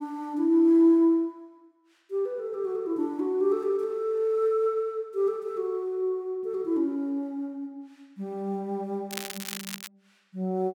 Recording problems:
crackle; at 9 s; loose cable, SNR 10 dB

